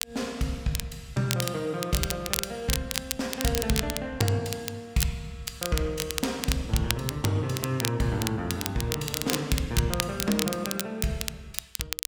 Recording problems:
crackle; vinyl, SNR 3 dB

